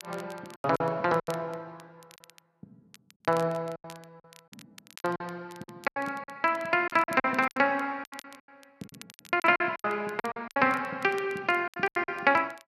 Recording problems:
crackle; vinyl, SNR 24 dB
lost packets; 15% of the sound replaced, filled with silence

